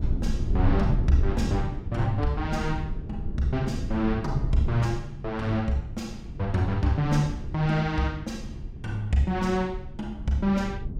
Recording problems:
low-frequency rumble; below 100 Hz, SNR 6 dB

